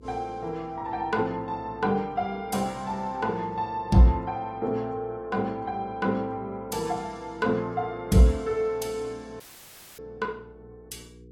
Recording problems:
lossy codec; AAC, log-spectral distance 2 dB, nothing above 14.3 kHz
electrical hum; 60 Hz, harmonics up to 480 Hz, SNR 24 dB
audio cutting out; at 9.5 s for 0.5 s; filled with static

